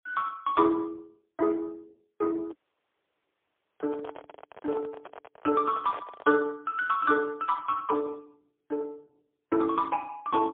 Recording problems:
phone line; 260 Hz to 2.9 kHz, AMR-NB, then MP3
handling noise; from 2.5 to 6.5 s; peak -7 dB vs average level
dropout; at 2.5 s for 1.5 s

